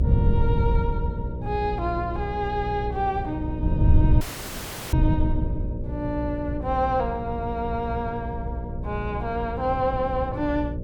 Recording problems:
hum; 60 Hz, harmonics up to 600 Hz, SNR 6 dB
wind noise; below 120 Hz, SNR 0 dB
dropout; at 4 s for 0.5 s

